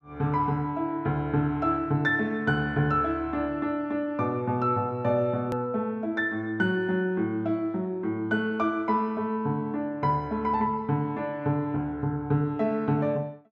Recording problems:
edit click; at 5.5 s

